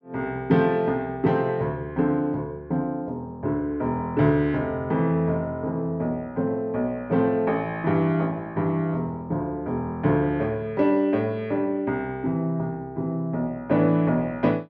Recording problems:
none

